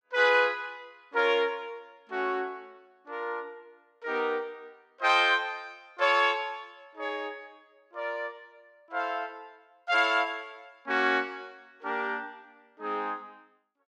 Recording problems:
none

